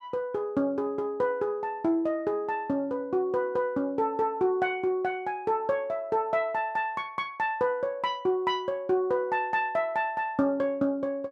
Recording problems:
none

